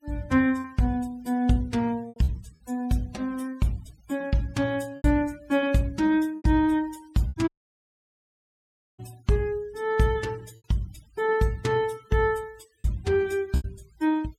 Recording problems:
denoising artefacts; signal-to-artefact ratio 26 dB
packet loss; 6% of the sound replaced, filled with repeated pitch periods
dropout; at 7.5 s for 1.5 s

